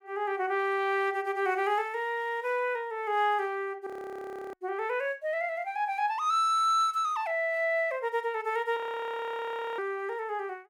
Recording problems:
audio freezing; at 4 s for 0.5 s and at 9 s for 1 s

